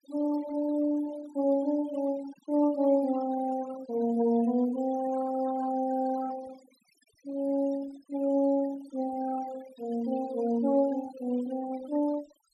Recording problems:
denoising artefacts; signal-to-artefact ratio 19 dB

